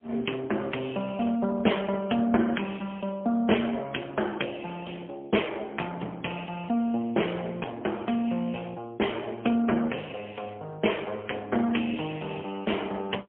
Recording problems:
phone line; 220 Hz to 3.3 kHz, AMR-NB, then MP3

